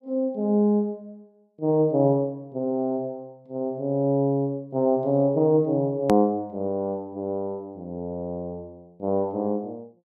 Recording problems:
edit click; at 6 s

